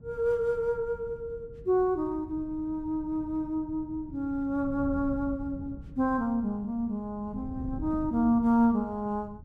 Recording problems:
wind on the microphone; below 150 Hz, SNR 15 dB

